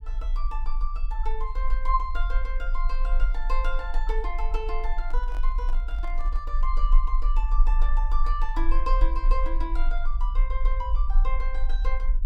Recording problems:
rumble; below 36 Hz, strongest tone 20 Hz, SNR -6 dB
microphone handling noise; from 5 to 6.5 s; peak -8 dB vs average level

